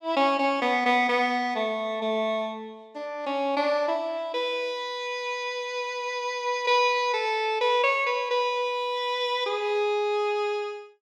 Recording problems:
none

